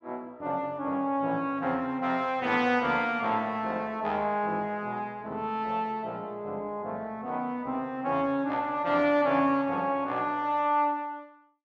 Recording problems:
none

